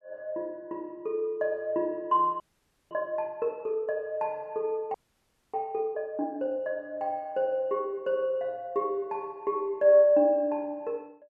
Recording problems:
frozen audio; at 2.5 s for 0.5 s and at 5 s for 0.5 s

